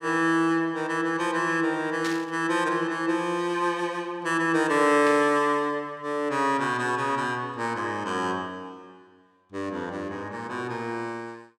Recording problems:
static burst; at 2 s and at 5 s; peak -5 dB vs average level

